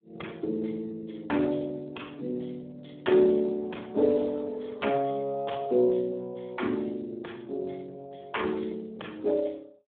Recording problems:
phone line; 190 Hz to 3.4 kHz, Speex

